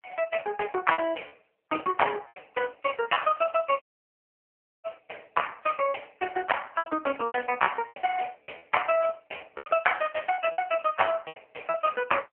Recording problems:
phone line; 280 Hz to 3.1 kHz, AMR-NB
lost packets; 8% of the sound replaced, filled with repeated pitch periods
dropout; at 4 s for 1 s

